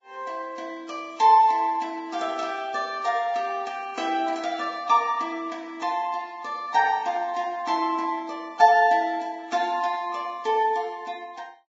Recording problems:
codec artefacts; Vorbis, log-spectral distance 3 dB, nothing above 7.3 kHz

